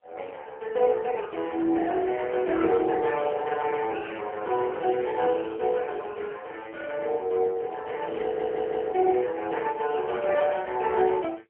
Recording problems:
telephone audio; 340 Hz to 3 kHz, AMR-NB, then MP3
stutter; at 8 s

